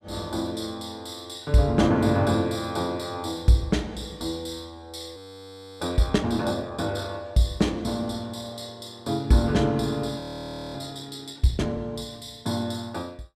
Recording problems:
audio freezing; at 5 s for 0.5 s and at 10 s for 0.5 s

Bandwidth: 15 kHz